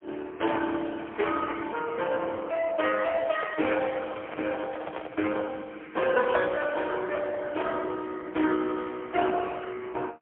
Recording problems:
phone line; 260 Hz to 3.2 kHz, AMR-NB, then MP3
microphone handling noise; from 3 to 5.5 s; peak -1 dB vs average level

